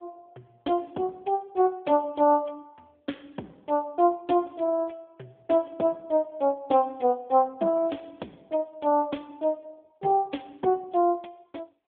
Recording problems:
phone line; 220 Hz to 3.5 kHz, AMR-NB

